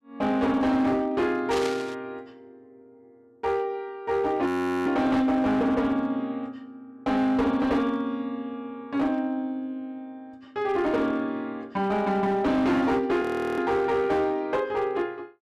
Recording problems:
distorted audio; hard clipping, signal-to-distortion ratio 11 dB
static burst; at 1.5 s; peak -4 dB vs average level
frozen audio; at 4.5 s and at 13 s

